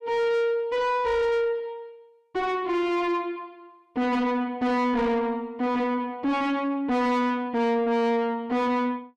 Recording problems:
distortion; soft clipping, signal-to-distortion ratio 7 dB

